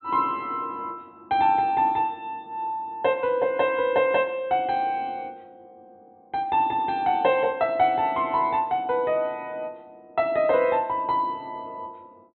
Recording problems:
low-pass filter; nothing above 4.1 kHz

